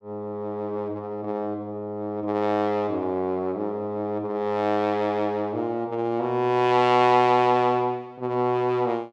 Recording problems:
none

